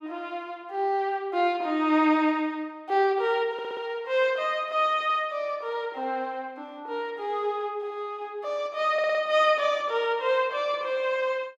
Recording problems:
stutter; at 3.5 s and at 9 s

